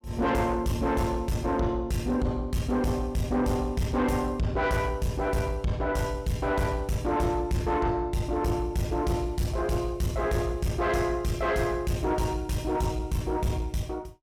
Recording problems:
distorted audio; soft clipping, signal-to-distortion ratio 10 dB

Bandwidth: 17 kHz